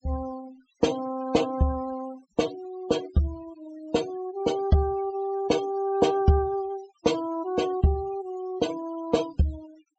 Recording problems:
treble cut off; nothing above 8 kHz
denoising artefacts; signal-to-artefact ratio 17 dB

